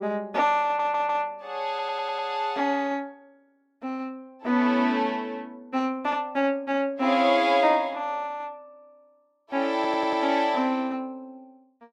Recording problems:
audio stuttering; at 0.5 s, at 1.5 s and at 10 s

